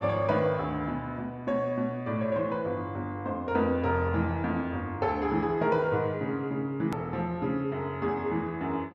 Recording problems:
edit click; at 7 s

